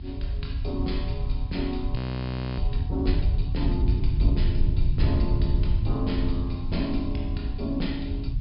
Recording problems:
treble cut off; nothing above 5.2 kHz
hiss; SNR 27 dB
low-frequency rumble; below 90 Hz, SNR -3 dB
frozen audio; at 2 s for 0.5 s

